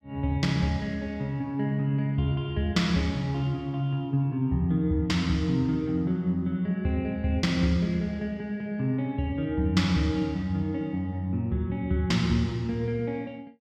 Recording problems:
none

